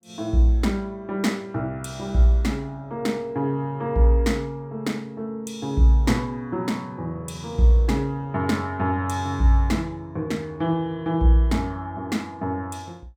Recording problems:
none

